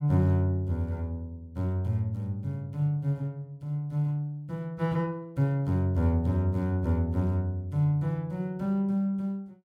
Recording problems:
none

